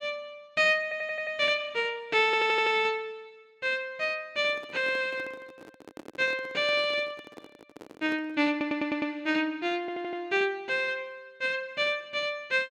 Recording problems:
audio stuttering; 4 times, first at 1 s
microphone handling noise; from 4.5 to 8.5 s; peak -12 dB vs average level

